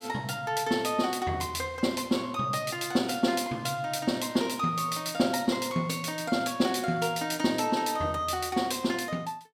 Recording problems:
none

